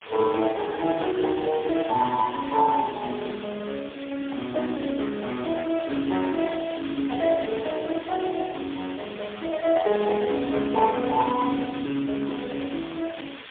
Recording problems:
telephone audio; 170 Hz to 3 kHz, AMR-NB, then MP3
hiss; SNR 15 dB

